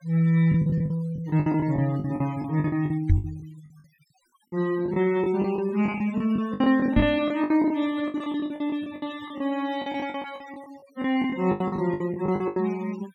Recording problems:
denoising artefacts; signal-to-artefact ratio 20 dB
lost packets; 18% of the sound replaced, filled with the last packet
knock on the microphone; at 3 s and at 7 s; peak +8 dB vs average level

